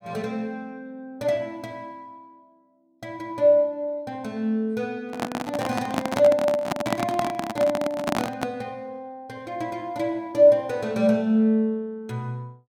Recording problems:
handling noise; from 5 to 8.5 s; peak +4 dB vs average level

